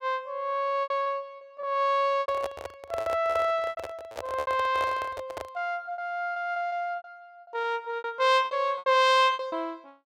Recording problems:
lost packets; 13% of the sound replaced, filled with repeated pitch periods
microphone handling noise; from 2 to 5.5 s; peak -4 dB vs average level

